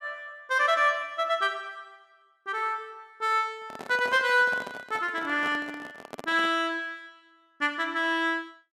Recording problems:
microphone handling noise; from 3.5 to 6.5 s; peak -8 dB vs average level

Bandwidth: 14 kHz